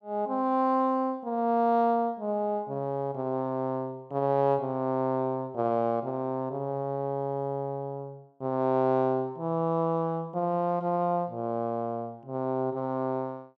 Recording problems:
none

